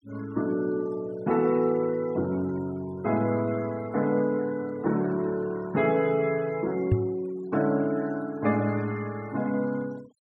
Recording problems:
noise reduction artefacts; signal-to-artefact ratio 24 dB
microphone thump; at 7 s; peak +7 dB vs average level

